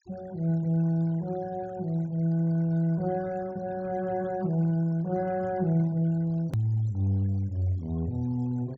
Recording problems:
low-pass filter; nothing above 8 kHz
denoising artefacts; signal-to-artefact ratio 26 dB
hard cut with a click; at 6.5 s

